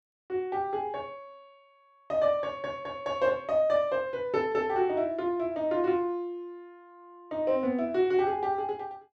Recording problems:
none

